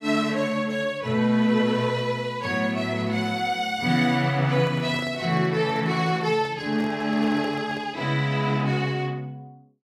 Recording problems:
microphone handling noise; from 4.5 to 8 s; peak -9 dB vs average level

